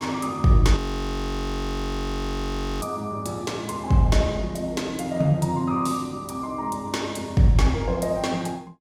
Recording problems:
frozen audio; at 1 s for 2 s

